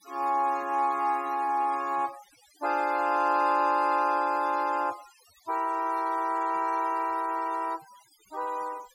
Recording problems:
denoising artefacts; signal-to-artefact ratio 21 dB

